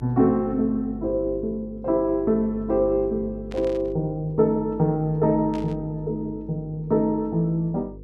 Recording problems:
hum; 50 Hz, harmonics up to 500 Hz, SNR 17 dB
static burst; at 3.5 s and at 5.5 s; peak -14 dB vs average level

